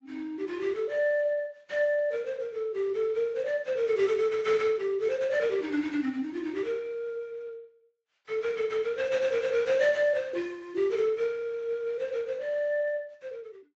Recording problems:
codec artefacts; Speex, then AAC, log-spectral distance 2 dB

